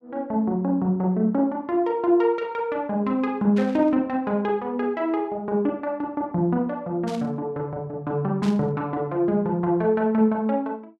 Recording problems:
static burst; at 3.5 s, at 7 s and at 8.5 s; peak -10 dB vs average level

